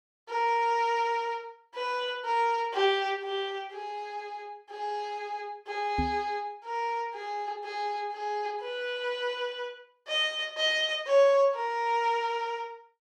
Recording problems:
microphone bump; at 6 s; peak +1 dB vs average level

